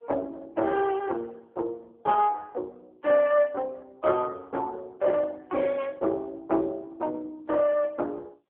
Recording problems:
phone line; 280 Hz to 3.3 kHz, AMR-NB

